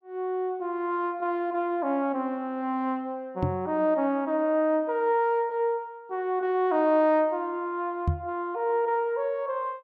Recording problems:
microphone bump; at 3.5 s and at 8 s; peak +5 dB vs average level

